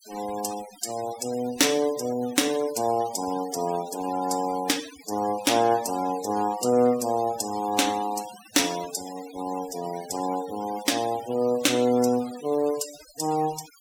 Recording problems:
denoising artefacts; signal-to-artefact ratio 15 dB

